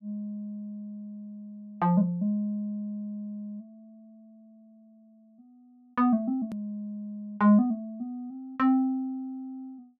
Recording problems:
hard cut with a click; at 6.5 s

